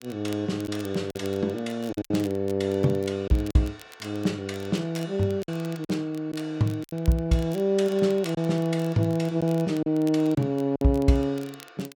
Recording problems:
crackling; vinyl, SNR 23 dB
lost packets; 5% of the sound replaced, filled with silence

